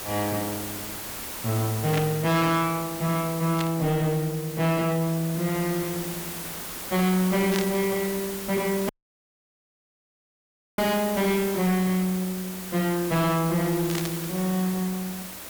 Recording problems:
distortion; soft clipping, signal-to-distortion ratio 8 dB
background hiss; slope -2 dB per octave, SNR 8 dB
burst of static; 4 times, first at 2 s; peak -1 dB vs average level
audio cutting out; at 9 s for 2 s

